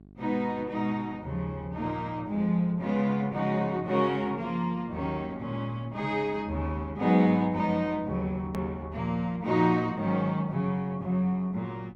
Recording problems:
mains hum; 50 Hz, harmonics up to 800 Hz, SNR 23 dB
hard cut with a click; at 8.5 s

